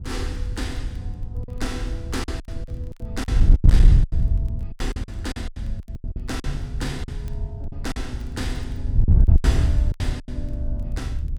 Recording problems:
distorted audio; hard clipping, uneven, signal-to-distortion ratio 12 dB
wind noise; below 82 Hz, SNR -9 dB
crackling; vinyl, SNR 29 dB
packet loss; 13% of the sound replaced, filled with silence

